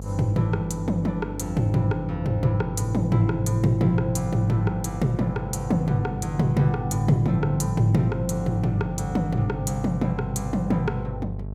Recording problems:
hum; 50 Hz, harmonics up to 650 Hz, SNR 10 dB

